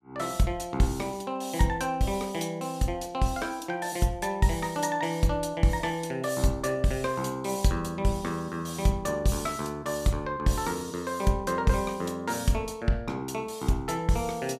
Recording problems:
none

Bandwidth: 15.5 kHz